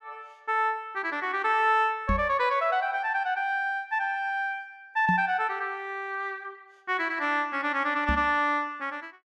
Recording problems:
knock on the microphone; at 2 s, at 5 s and at 8 s; peak +1 dB vs average level

